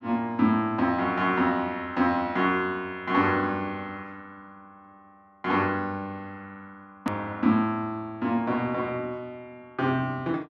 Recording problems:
click at an edit; at 7 s

